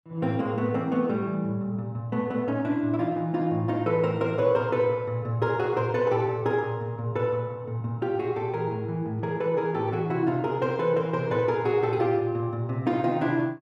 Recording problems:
none

